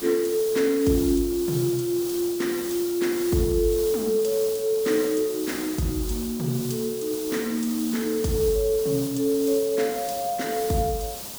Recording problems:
background hiss; SNR 10 dB

